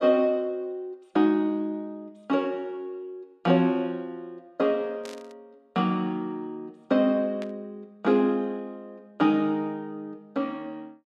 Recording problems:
static burst; at 5 s and at 7.5 s; peak -12 dB vs average level

